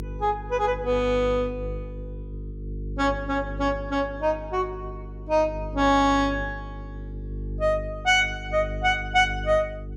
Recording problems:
hum; 50 Hz, harmonics up to 450 Hz, SNR 11 dB

